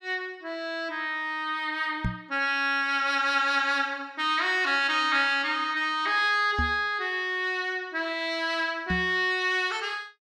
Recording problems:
microphone thump; at 2 s, at 6.5 s and at 9 s; peak +1 dB vs average level

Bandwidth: 13.5 kHz